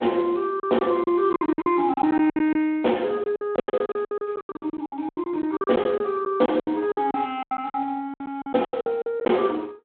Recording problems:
telephone audio; 260 Hz to 3.7 kHz, Speex
packet loss; 19% of the sound replaced, filled with silence

